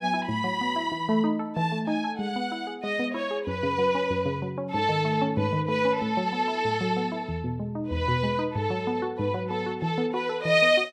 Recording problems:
none

